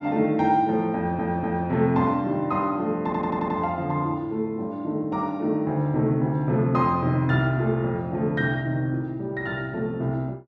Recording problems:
stutter; at 1 s and at 3 s

